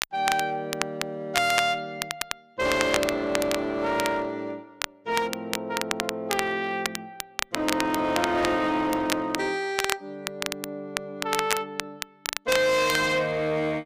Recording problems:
distorted audio; hard clipping, uneven, signal-to-distortion ratio 10 dB
crackle; vinyl, SNR 6 dB

